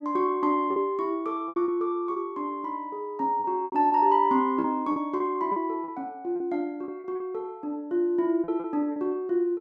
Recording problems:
lost packets; 9% of the sound replaced, filled with repeated pitch periods

